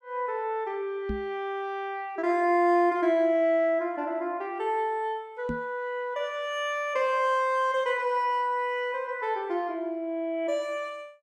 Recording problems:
microphone thump; at 1 s and at 5.5 s; peak -2 dB vs average level

